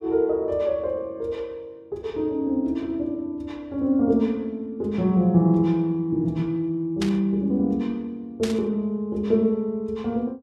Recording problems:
burst of static; at 7 s and at 8.5 s; peak -3 dB vs average level

